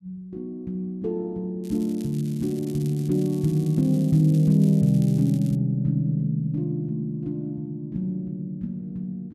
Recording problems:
crackling; from 1.5 to 5.5 s; loose cable, SNR 23 dB

